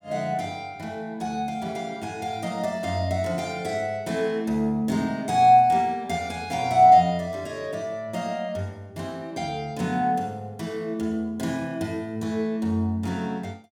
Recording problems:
none

